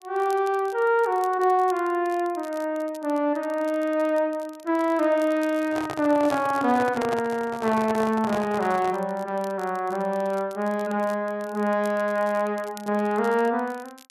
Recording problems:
crackling; vinyl, SNR 25 dB
handling noise; from 5.5 to 9 s; peak -3 dB vs average level

